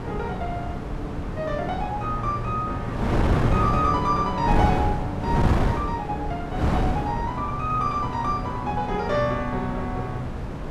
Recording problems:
wind on the microphone; below 380 Hz, SNR 1 dB

